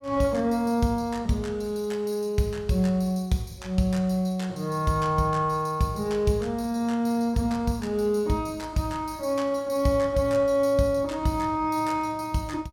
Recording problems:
none

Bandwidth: 17.5 kHz